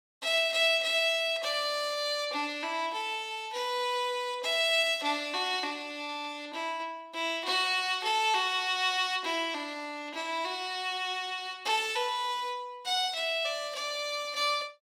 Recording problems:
none

